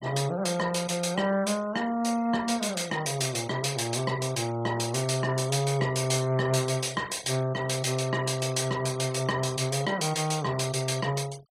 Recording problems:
noise reduction artefacts; signal-to-artefact ratio 20 dB

